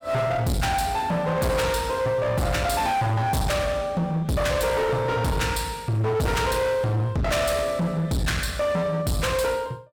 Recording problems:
distorted audio; hard clipping, uneven, signal-to-distortion ratio 6 dB

